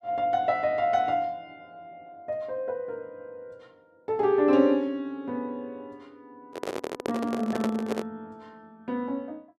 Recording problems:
handling noise; from 6.5 to 8 s; peak +1 dB vs average level

